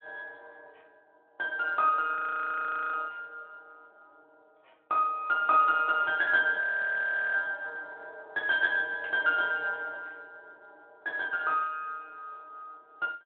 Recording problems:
telephone audio; 300 Hz to 3.8 kHz, Speex
audio freezing; at 2 s for 1 s and at 6.5 s for 0.5 s
static burst; at 9 s; peak -15 dB vs average level

